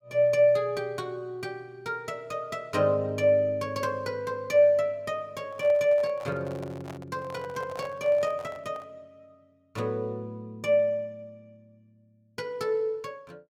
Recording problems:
handling noise; from 5.5 to 9 s; peak -11 dB vs average level

